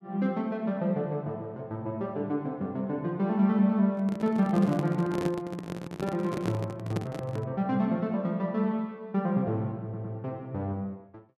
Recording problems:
microphone handling noise; from 4 to 7.5 s; peak +2 dB vs average level
audio stuttering; at 10 s

